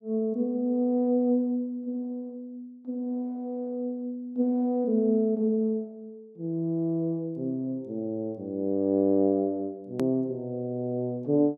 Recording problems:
hard cut with a click; at 10 s

